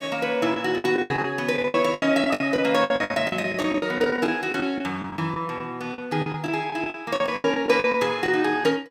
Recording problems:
packet loss; 18% of the sound replaced, filled with the last packet

